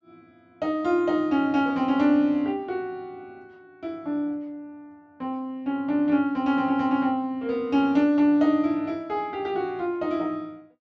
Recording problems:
low-pass filter; nothing above 8 kHz

